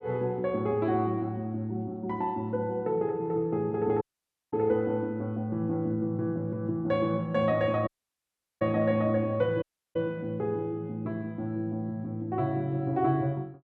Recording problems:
dropout; at 4 s for 0.5 s, at 8 s for 0.5 s and at 9.5 s

